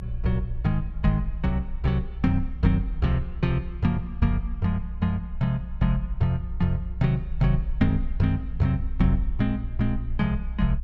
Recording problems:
rumble; below 60 Hz, strongest tone 24 Hz, SNR 9 dB

